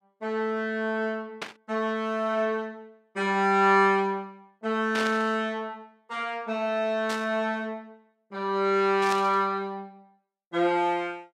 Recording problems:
static burst; 4 times, first at 1.5 s; peak -2 dB vs average level

